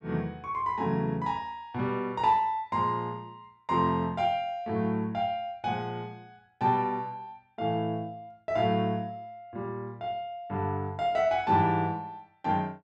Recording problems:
none

